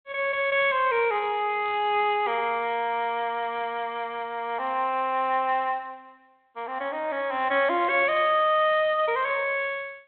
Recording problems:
telephone audio; 300 Hz to 3.3 kHz, G.726

